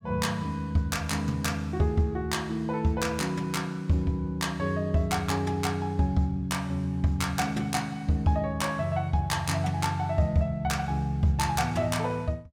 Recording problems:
none

